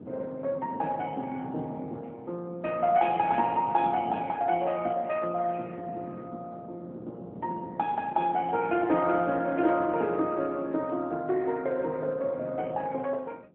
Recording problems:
phone line; 240 Hz to 3 kHz, AMR-NB
wind noise; below 400 Hz, SNR 16 dB

